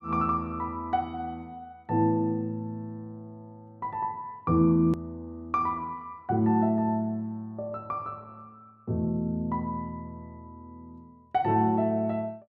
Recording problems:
hard cut with a click; at 5 s

